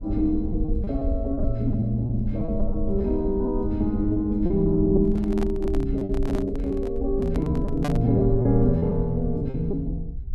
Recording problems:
low-frequency rumble; below 64 Hz, SNR 7 dB
packet loss; 9% of the sound replaced, filled with repeated pitch periods
handling noise; from 5 to 8 s; peak -2 dB vs average level

